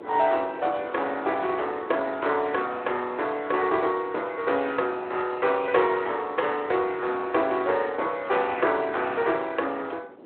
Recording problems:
phone line; 280 Hz to 3.8 kHz, Speex
wind on the microphone; below 600 Hz, SNR 20 dB

